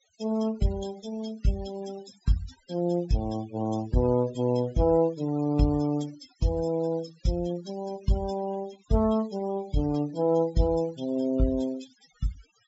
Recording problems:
treble missing; nothing above 8 kHz
noise reduction artefacts; signal-to-artefact ratio 18 dB

